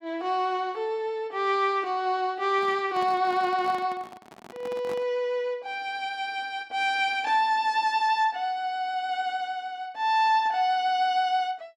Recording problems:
microphone handling noise; from 2.5 to 5 s; peak -10 dB vs average level

